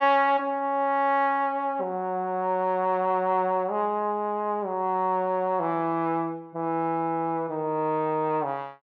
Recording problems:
none

